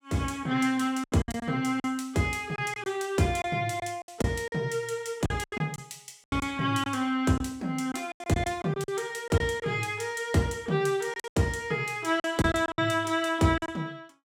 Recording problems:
packet loss; 10% of the sound replaced, filled with silence

